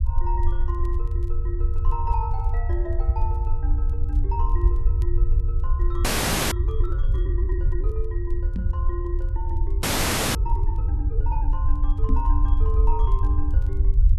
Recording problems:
rumble; below 66 Hz, SNR -10 dB
crackling; vinyl, SNR 30 dB
frozen audio; at 6 s and at 10 s for 0.5 s
microphone bump; at 8.5 s and at 12 s; peak +9 dB vs average level

